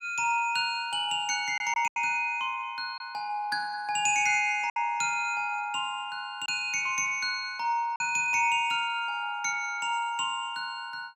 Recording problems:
lost packets; 2% of the sound replaced, filled with silence

